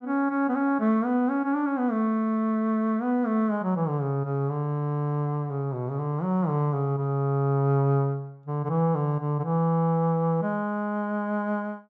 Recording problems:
none

